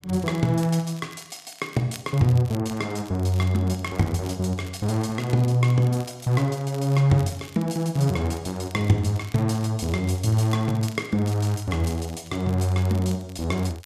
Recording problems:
crackling; vinyl, SNR 22 dB

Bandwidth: 14.5 kHz